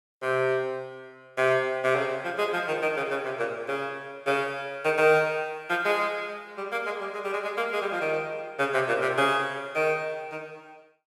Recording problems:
none

